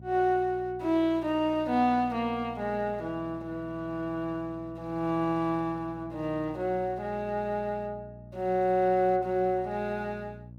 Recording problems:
hum; 60 Hz, harmonics up to 540 Hz, SNR 18 dB

